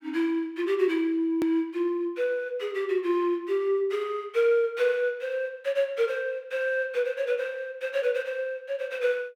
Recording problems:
hard cut with a click; at 1.5 s

